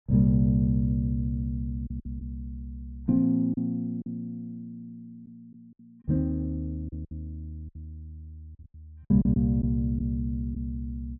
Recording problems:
treble missing; nothing above 4 kHz
lost packets; 6% of the sound replaced, filled with silence

